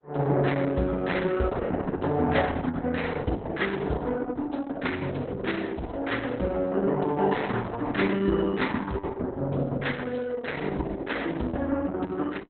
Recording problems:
codec artefacts; Opus, log-spectral distance 5 dB, nothing above 4 kHz

